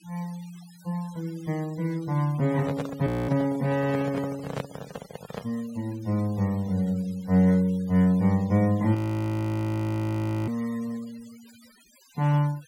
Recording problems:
denoising artefacts; signal-to-artefact ratio 23 dB
handling noise; from 2.5 to 5.5 s; peak -2 dB vs average level
frozen audio; at 3 s and at 9 s for 1.5 s

